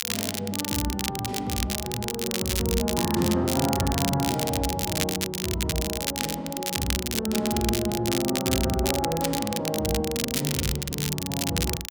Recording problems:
crackle; vinyl, SNR 2 dB

